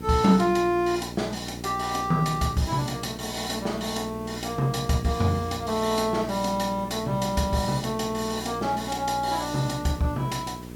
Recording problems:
mains hum; 60 Hz, harmonics up to 600 Hz, SNR 12 dB
hiss; slope -4 dB per octave, SNR 21 dB

